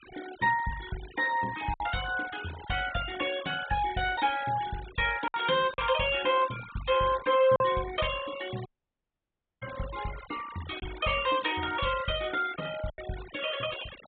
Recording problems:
treble cut off; nothing above 4 kHz
noise reduction artefacts; signal-to-artefact ratio 15 dB
packet loss; 2% of the sound replaced, filled with silence
dropout; at 8.5 s for 1 s

